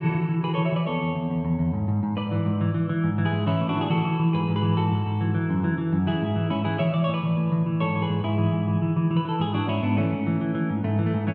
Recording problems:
none

